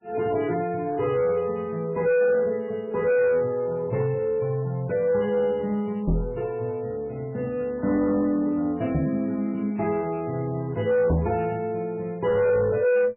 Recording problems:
lossy codec; MP3, log-spectral distance 2 dB, nothing above 2.4 kHz
distorted audio; soft clipping, signal-to-distortion ratio 7 dB
microphone thump; at 6 s, at 9 s and at 11 s; peak +4 dB vs average level

